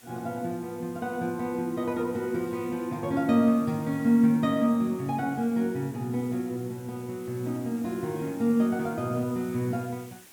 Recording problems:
background hiss; slope -1 dB per octave, SNR 23 dB

